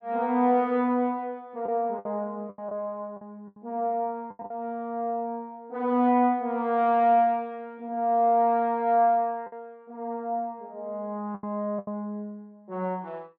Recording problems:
lost packets; 5% of the sound replaced, filled with the last packet

